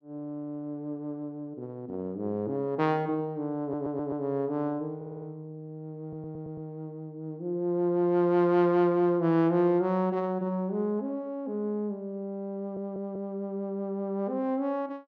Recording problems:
stutter; 4 times, first at 3.5 s

